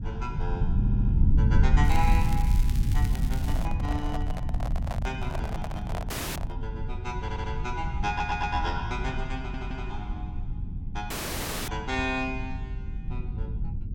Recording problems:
rumble; below 100 Hz, SNR -4 dB
stutter; 4 times, first at 1 s
crackling; from 2 to 3.5 s; loose cable, SNR 10 dB
handling noise; from 3.5 to 6.5 s; peak +2 dB vs average level
dropout; at 6 s and at 11 s for 0.5 s

